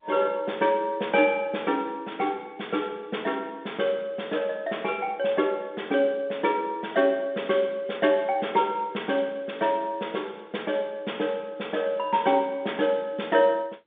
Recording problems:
phone line; 240 Hz to 3.6 kHz, G.711

